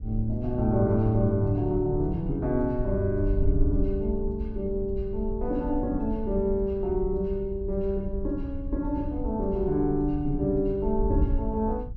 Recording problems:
wind on the microphone; below 68 Hz, SNR 6 dB

